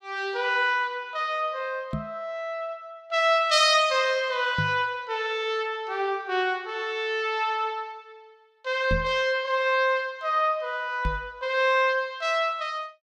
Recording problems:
microphone bump; 4 times, first at 2 s; peak +1 dB vs average level

